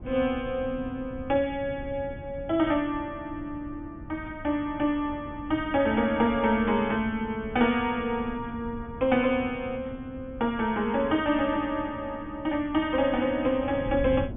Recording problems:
treble missing; nothing above 3.6 kHz
wind on the microphone; below 190 Hz, SNR 15 dB

